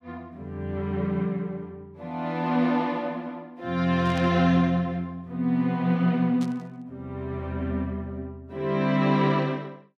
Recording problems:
static burst; at 4 s and at 6.5 s; peak -12 dB vs average level

